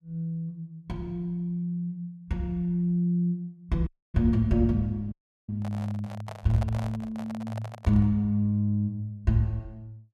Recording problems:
dropout; at 4 s and at 5 s
microphone handling noise; from 5.5 to 8 s; peak -5 dB vs average level

